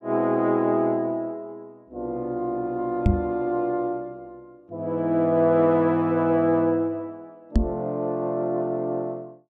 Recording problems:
knock on the microphone; at 3 s and at 7.5 s; peak +7 dB vs average level

